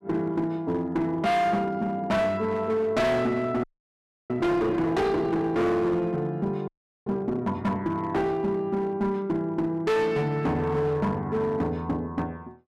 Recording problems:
distortion; hard clipping, uneven, signal-to-distortion ratio 6 dB
audio freezing; at 3.5 s for 0.5 s and at 6.5 s

